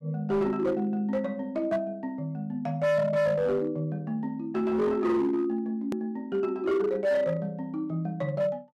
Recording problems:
distorted audio; hard clipping, signal-to-distortion ratio 12 dB
edit click; at 6 s

